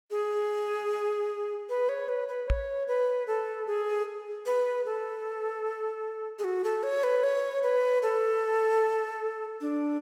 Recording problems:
microphone thump; at 2.5 s; peak +5 dB vs average level

